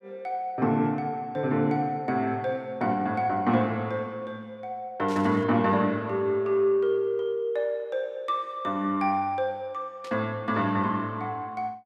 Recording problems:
static burst; at 5 s and at 10 s; peak -13 dB vs average level

